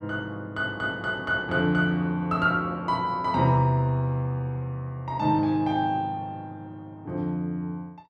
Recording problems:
none

